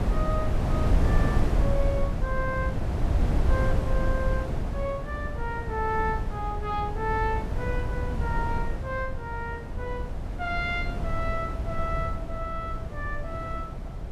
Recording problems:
wind on the microphone; below 130 Hz, SNR -3 dB

